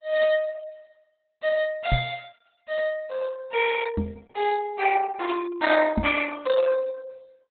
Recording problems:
lossy compression; Opus, log-spectral distance 4 dB, nothing above 4 kHz
microphone thump; at 2 s, at 4 s and at 6 s; peak +4 dB vs average level

